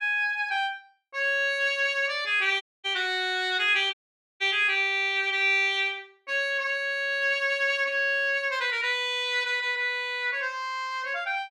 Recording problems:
audio cutting out; at 2.5 s and at 4 s

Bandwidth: 14 kHz